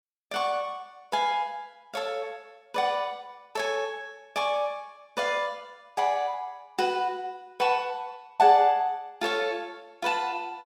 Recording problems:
none

